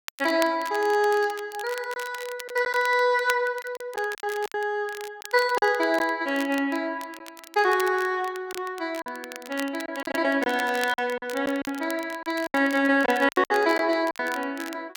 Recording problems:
crackle; vinyl, SNR 17 dB
lost packets; 7% of the sound replaced, filled with silence

